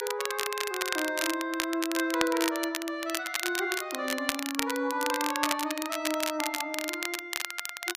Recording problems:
crackle; vinyl, SNR 2 dB

